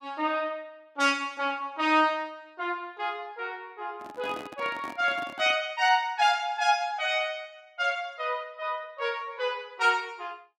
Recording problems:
microphone handling noise; from 4 to 5.5 s; peak -9 dB vs average level

